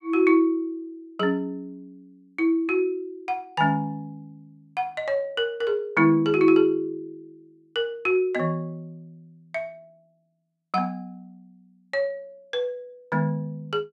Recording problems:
none

